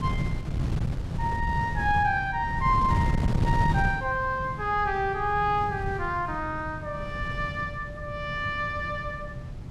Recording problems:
wind noise; below 170 Hz, SNR 4 dB

